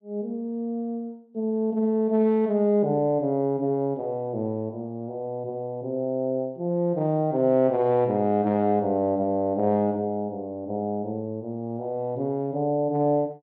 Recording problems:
none

